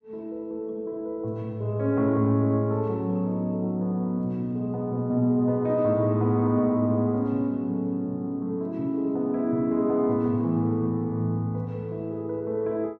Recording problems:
none

